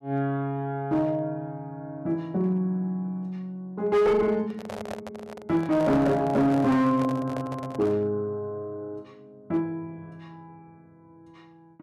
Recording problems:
distorted audio; hard clipping, uneven, signal-to-distortion ratio 11 dB
microphone handling noise; from 4.5 to 8 s; peak -6 dB vs average level

